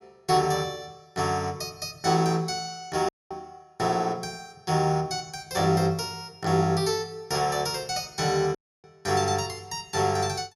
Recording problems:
dropout; at 3 s and at 8.5 s
microphone thump; at 3.5 s; peak -23 dB vs average level

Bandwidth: 14.5 kHz